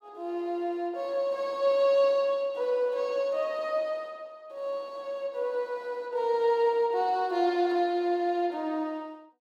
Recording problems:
none

